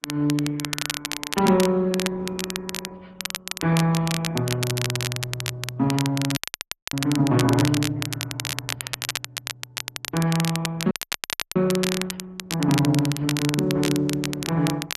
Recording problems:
lossy codec; MP3, then Opus, log-spectral distance 2 dB
crackling; vinyl, SNR 6 dB
audio freezing; at 6.5 s for 0.5 s and at 11 s for 0.5 s

